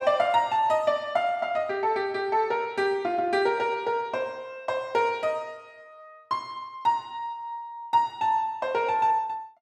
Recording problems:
none

